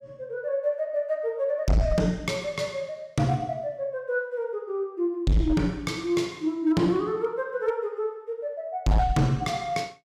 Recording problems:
distortion; hard clipping, signal-to-distortion ratio 7 dB

